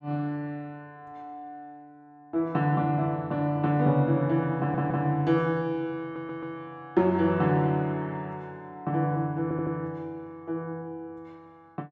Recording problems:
stutter; at 4.5 s, at 6 s and at 9.5 s

